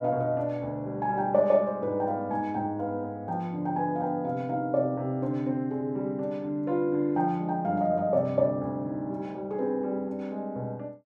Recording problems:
none

